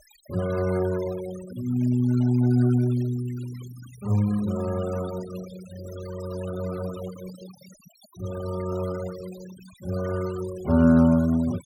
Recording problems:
denoising artefacts; signal-to-artefact ratio 20 dB

